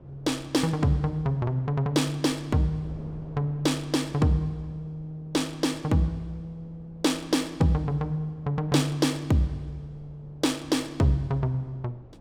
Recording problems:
wind on the microphone; below 380 Hz, SNR 23 dB

